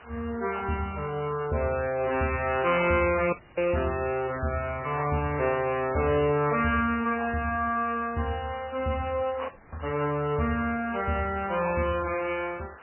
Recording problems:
lossy codec; MP3, log-spectral distance 5 dB, nothing above 2.4 kHz
background hiss; SNR 21 dB
audio cutting out; at 3.5 s and at 9.5 s

